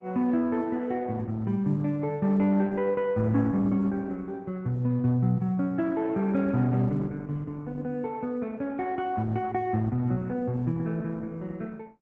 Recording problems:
codec artefacts; Opus, log-spectral distance 2 dB

